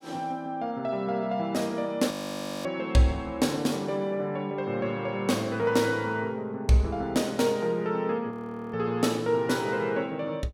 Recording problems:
frozen audio; at 2 s for 0.5 s and at 8.5 s

